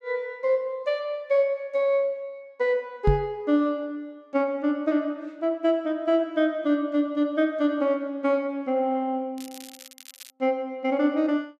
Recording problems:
microphone thump; at 3 s; peak +7 dB vs average level
crackling; at 9.5 s; loose cable, SNR 18 dB

